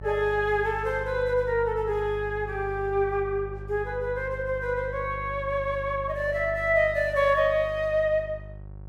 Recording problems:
electrical hum; 50 Hz, harmonics up to 750 Hz, SNR 13 dB

